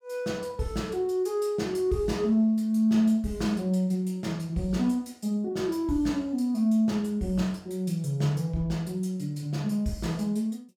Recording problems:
none

